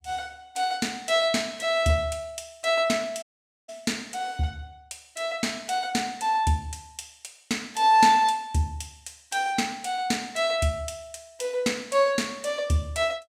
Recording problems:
audio cutting out; at 3 s

